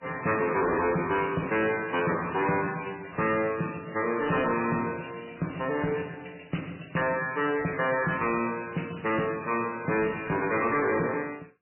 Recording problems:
codec artefacts; MP3, log-spectral distance 10 dB, nothing above 2.7 kHz
distorted audio; hard clipping, uneven, signal-to-distortion ratio 10 dB

